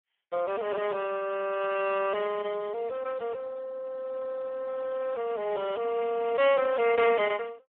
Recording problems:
phone line; 300 Hz to 2.9 kHz, Speex

